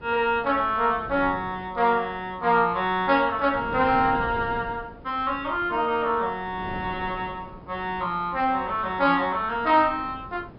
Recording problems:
treble cut off; nothing above 5.5 kHz
wind noise; below 470 Hz, SNR 18 dB

